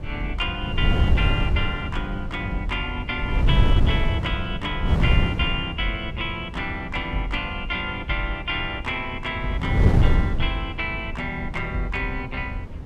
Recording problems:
wind noise; below 130 Hz, SNR -1 dB

